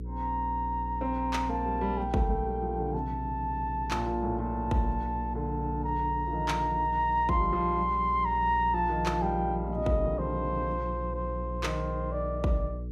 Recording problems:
electrical hum; 60 Hz, harmonics up to 480 Hz, SNR 7 dB

